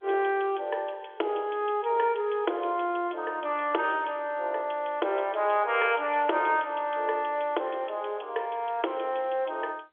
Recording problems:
telephone audio; 300 Hz to 3.4 kHz, G.711

